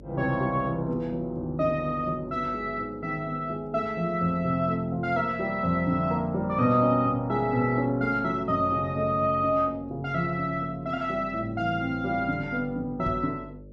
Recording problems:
electrical hum; 50 Hz, harmonics up to 600 Hz, SNR 21 dB
microphone bump; at 13 s; peak -3 dB vs average level

